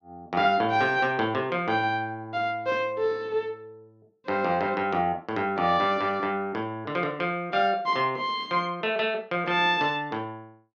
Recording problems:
none

